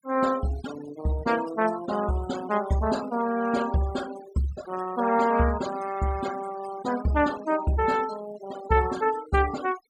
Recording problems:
noise reduction artefacts; signal-to-artefact ratio 15 dB

